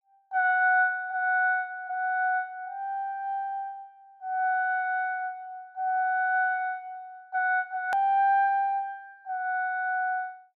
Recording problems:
hard cut with a click; at 8 s

